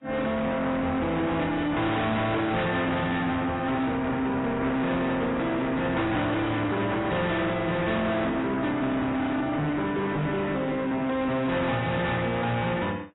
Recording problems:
lossy compression; AAC, then AAC, log-spectral distance 3 dB, nothing above 3.8 kHz
distorted audio; soft clipping, signal-to-distortion ratio 8 dB

